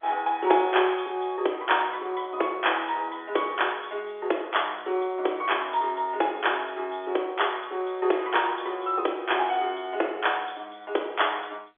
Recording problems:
phone line; 300 Hz to 3.5 kHz, G.711

